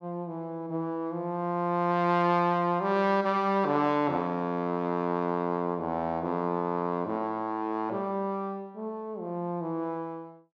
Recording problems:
none

